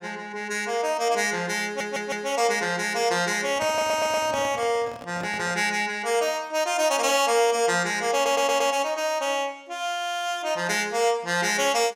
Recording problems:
audio stuttering; at 1.5 s, at 3.5 s and at 8 s
handling noise; from 3.5 to 5.5 s; peak -7 dB vs average level

